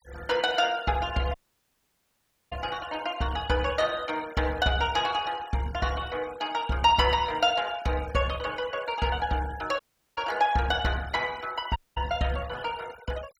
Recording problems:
denoising artefacts; signal-to-artefact ratio 19 dB
dropout; at 1.5 s for 1 s, at 10 s and at 12 s

